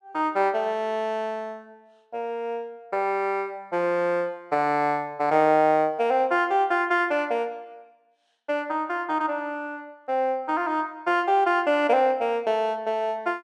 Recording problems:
none

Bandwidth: 12 kHz